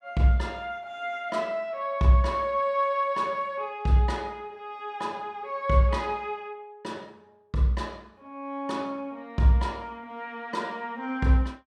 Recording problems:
none

